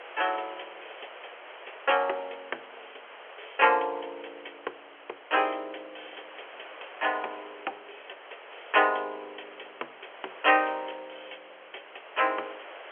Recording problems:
phone line; 340 Hz to 3.3 kHz, G.711
hiss; SNR 18 dB

